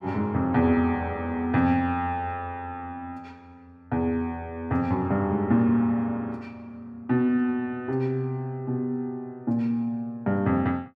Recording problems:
none

